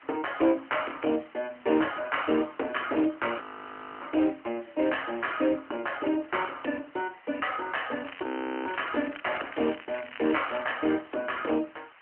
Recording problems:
phone line; 240 Hz to 3.1 kHz, AMR-NB
distorted audio; soft clipping, signal-to-distortion ratio 13 dB
hiss; SNR 24 dB
frozen audio; at 3.5 s for 0.5 s and at 8 s
crackle; from 8 to 11 s; loose cable, SNR 13 dB

